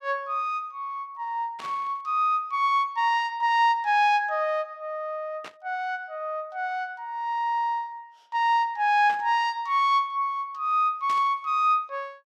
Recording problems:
static burst; 4 times, first at 1.5 s; peak -10 dB vs average level

